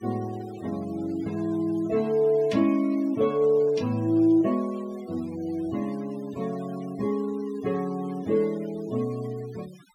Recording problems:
noise reduction artefacts; signal-to-artefact ratio 22 dB

